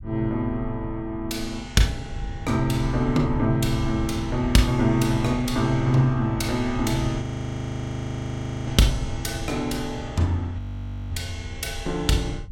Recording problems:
rumble; below 100 Hz, SNR 11 dB
audio freezing; at 7 s for 1.5 s and at 11 s for 0.5 s

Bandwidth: 16.5 kHz